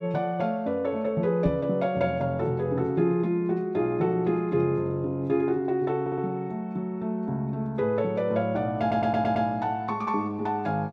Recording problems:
knock on the microphone; at 1.5 s; peak +2 dB vs average level
audio stuttering; at 6 s and at 9 s

